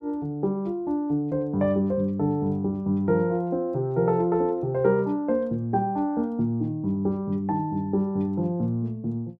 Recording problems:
none

